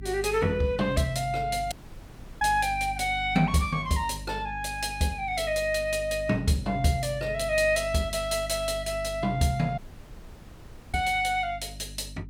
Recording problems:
electrical hum; 50 Hz, harmonics up to 300 Hz, SNR 14 dB
dropout; at 1.5 s for 0.5 s and at 10 s for 1 s

